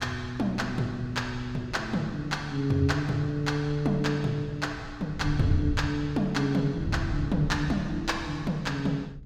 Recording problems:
wind noise; below 130 Hz, SNR 10 dB

